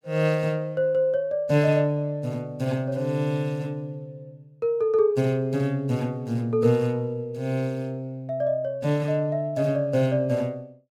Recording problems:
none

